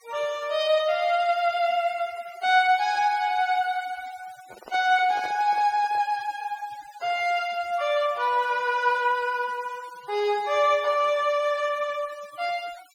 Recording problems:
denoising artefacts; signal-to-artefact ratio 23 dB
handling noise; from 4.5 to 6 s; peak -11 dB vs average level

